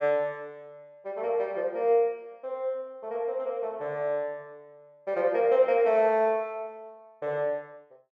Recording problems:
none

